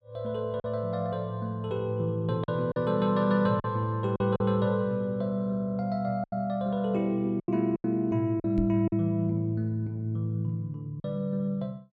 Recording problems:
packet loss; 5% of the sound replaced, filled with silence
microphone thump; at 8.5 s; peak 0 dB vs average level

